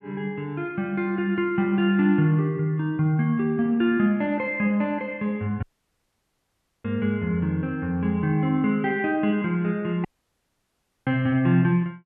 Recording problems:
dropout; at 5.5 s for 1 s and at 10 s for 1 s

